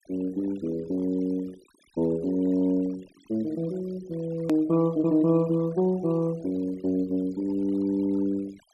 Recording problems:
denoising artefacts; signal-to-artefact ratio 23 dB
edit click; at 4.5 s

